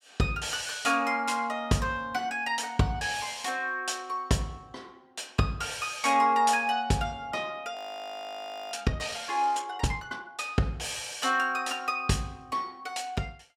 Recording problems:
audio freezing; at 8 s for 1 s

